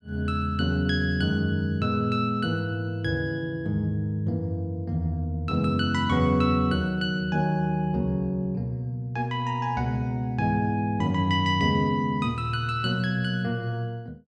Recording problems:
none

